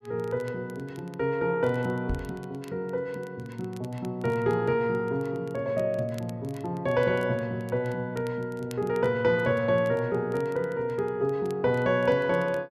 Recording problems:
crackle; vinyl, SNR 27 dB
knock on the microphone; at 2 s; peak -1 dB vs average level

